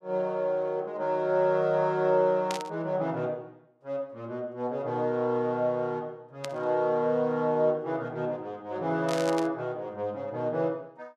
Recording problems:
burst of static; at 2.5 s, at 6.5 s and at 9 s; peak -3 dB vs average level

